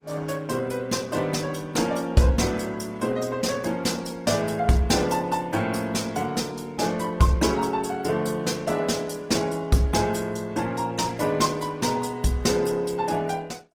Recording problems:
lossy compression; Opus, log-spectral distance 4 dB

